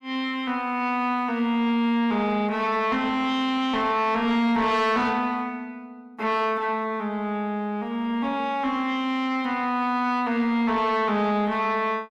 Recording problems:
distortion; soft clipping, signal-to-distortion ratio 11 dB

